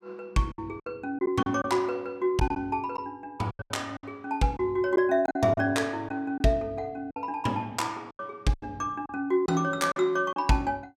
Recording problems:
lost packets; 9% of the sound replaced, filled with silence

